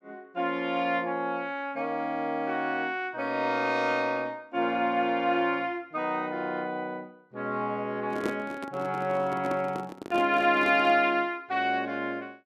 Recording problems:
microphone handling noise; from 8 to 11 s; peak +1 dB vs average level

